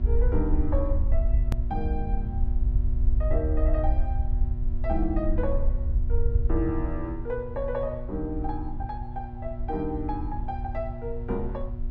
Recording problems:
electrical hum; 60 Hz, harmonics up to 960 Hz, SNR 8 dB
low-frequency rumble; below 62 Hz, SNR -3 dB
click at an edit; at 1.5 s

